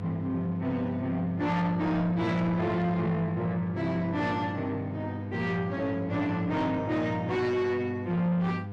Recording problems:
distortion; soft clipping, signal-to-distortion ratio 11 dB
electrical hum; 50 Hz, harmonics up to 1.2 kHz, SNR 9 dB

